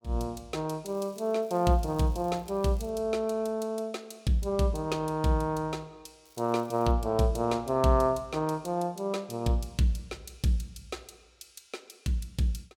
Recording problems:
crackling; from 1 to 3 s and at 6 s; loose cable, SNR 29 dB

